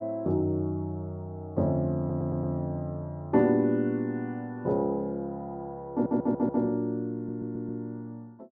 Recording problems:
low-pass filter; nothing above 7.4 kHz
audio stuttering; at 2 s, at 6 s and at 7 s

